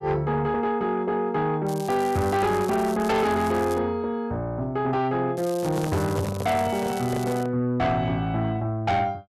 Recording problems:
distortion; soft clipping, signal-to-distortion ratio 10 dB
crackle; from 1.5 to 4 s and from 5.5 to 7.5 s; loose cable, SNR 17 dB
handling noise; from 5.5 to 7.5 s; peak -2 dB vs average level

